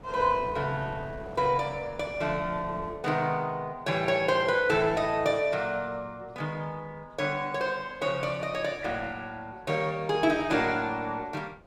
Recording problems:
wind noise; below 640 Hz, SNR 20 dB

